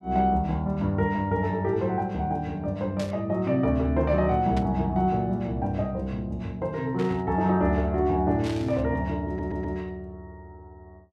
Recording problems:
burst of static; 4 times, first at 3 s; peak -9 dB vs average level
stutter; at 9.5 s

